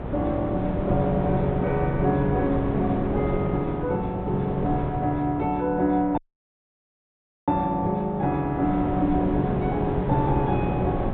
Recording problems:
treble cut off; nothing above 4 kHz
hum; 60 Hz, harmonics up to 480 Hz, SNR 20 dB
wind on the microphone; below 490 Hz, SNR 5 dB
audio cutting out; at 6 s for 1.5 s

